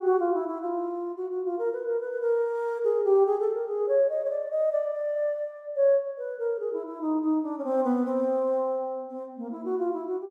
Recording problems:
none

